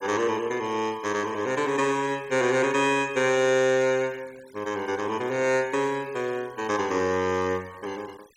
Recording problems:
denoising artefacts; signal-to-artefact ratio 23 dB

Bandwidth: 17 kHz